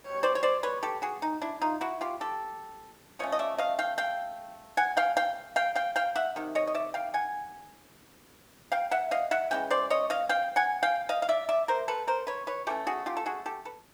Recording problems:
background hiss; slope -4 dB per octave, SNR 27 dB

